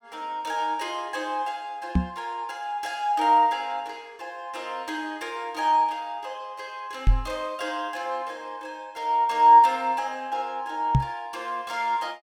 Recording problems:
microphone bump; at 2 s, at 7 s and at 11 s; peak +8 dB vs average level

